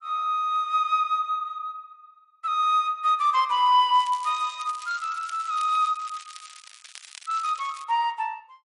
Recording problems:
codec artefacts; MP3, log-spectral distance 5 dB
crackle; from 4 to 8 s; loose cable, SNR 19 dB

